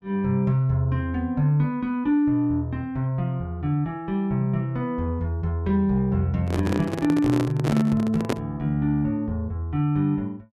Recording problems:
microphone handling noise; from 6.5 to 8.5 s; peak +3 dB vs average level

